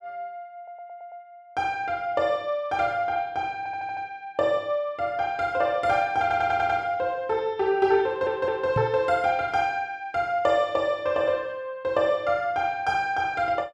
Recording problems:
stutter; 4 times, first at 0.5 s
microphone thump; at 9 s; peak +1 dB vs average level

